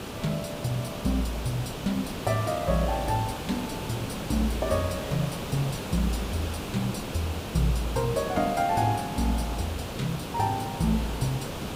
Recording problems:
hiss; slope -5 dB per octave, SNR 5 dB

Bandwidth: 15.5 kHz